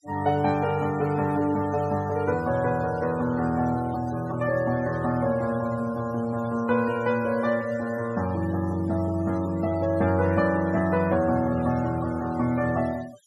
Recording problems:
denoising artefacts; signal-to-artefact ratio 19 dB

